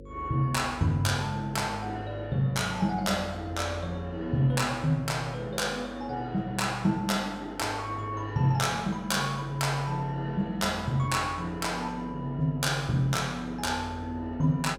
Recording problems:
hum; 50 Hz, harmonics up to 550 Hz, SNR 18 dB

